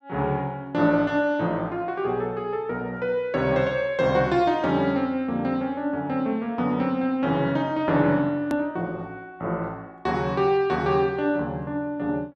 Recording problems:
hard cut with a click; at 8.5 s

